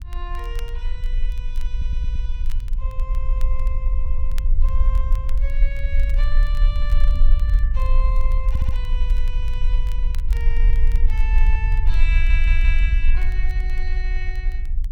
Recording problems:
rumble; below 44 Hz, strongest tone 20 Hz, SNR -13 dB
crackle; vinyl, SNR 16 dB
stutter; 4 times, first at 1.5 s
microphone thump; at 7 s; peak -3 dB vs average level

